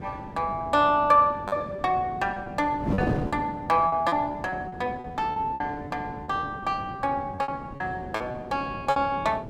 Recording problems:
wind on the microphone; below 410 Hz, SNR 10 dB
lost packets; 10% of the sound replaced, filled with repeated pitch periods

